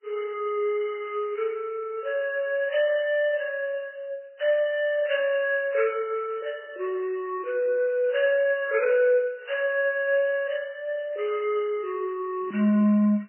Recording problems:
codec artefacts; MP3, log-spectral distance 2 dB, nothing above 2.8 kHz

